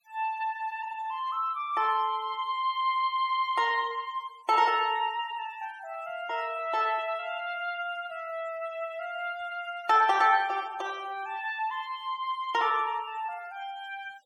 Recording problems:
denoising artefacts; signal-to-artefact ratio 23 dB

